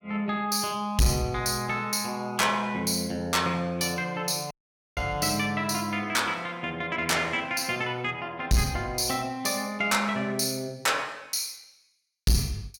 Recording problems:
distortion; soft clipping, signal-to-distortion ratio 12 dB
dropout; at 4.5 s

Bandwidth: 17.5 kHz